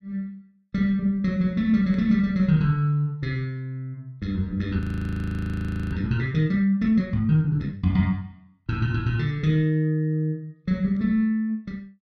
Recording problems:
frozen audio; at 5 s for 1 s

